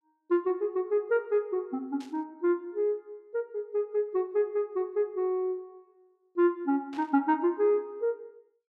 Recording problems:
burst of static; at 2 s and at 7 s; peak -15 dB vs average level

